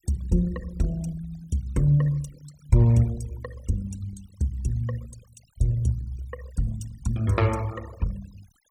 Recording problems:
noise reduction artefacts; signal-to-artefact ratio 21 dB

